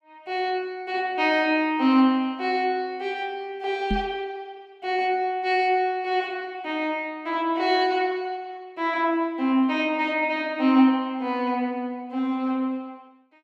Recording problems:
microphone bump; at 4 s; peak +1 dB vs average level

